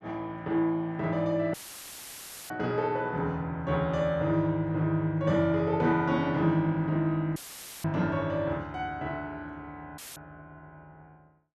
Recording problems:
dropout; at 1.5 s for 1 s, at 7.5 s and at 10 s; filled with static

